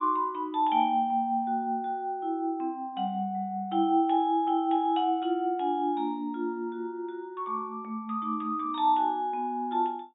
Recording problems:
treble missing; nothing above 4 kHz

